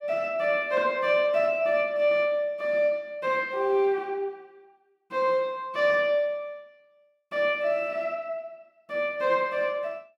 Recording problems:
none

